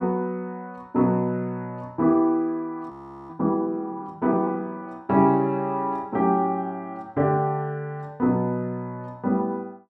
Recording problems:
frozen audio; at 3 s

